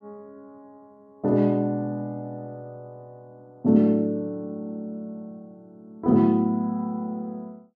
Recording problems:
none

